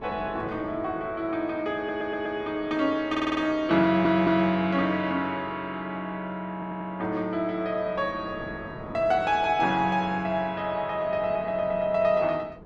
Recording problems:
wind on the microphone; below 520 Hz, SNR 20 dB
stutter; 4 times, first at 2 s

